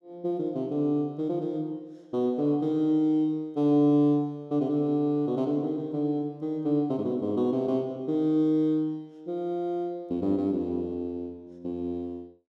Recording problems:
none

